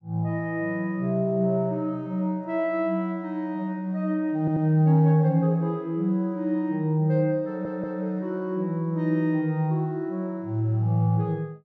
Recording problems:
audio stuttering; at 4.5 s and at 7.5 s

